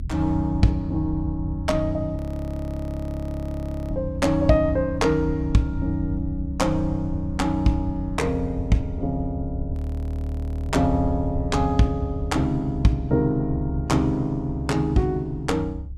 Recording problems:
rumble; below 80 Hz, SNR 8 dB
frozen audio; at 2 s for 2 s and at 9.5 s for 1 s

